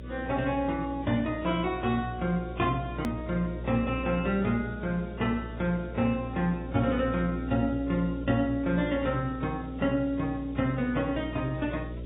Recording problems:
treble missing; nothing above 4 kHz
lossy codec; AAC, log-spectral distance 4 dB
hum; 60 Hz, harmonics up to 600 Hz, SNR 10 dB
hiss; SNR 30 dB
click at an edit; at 3 s

